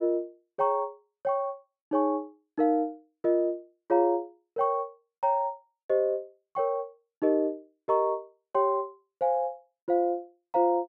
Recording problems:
none

